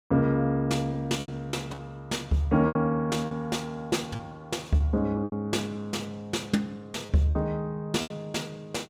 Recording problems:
packet loss; 8% of the sound replaced, filled with repeated pitch periods

